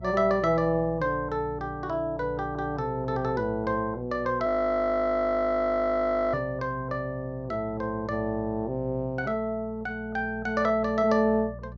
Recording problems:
electrical hum; 60 Hz, harmonics up to 420 Hz, SNR 17 dB
frozen audio; at 4.5 s for 2 s

